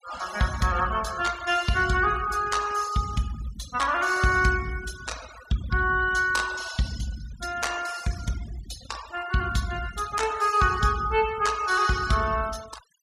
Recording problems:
noise reduction artefacts; signal-to-artefact ratio 15 dB

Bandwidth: 14.5 kHz